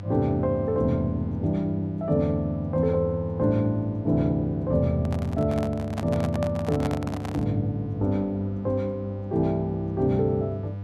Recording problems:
hum; 50 Hz, harmonics up to 700 Hz, SNR 10 dB
microphone handling noise; from 5 to 7.5 s; peak -2 dB vs average level

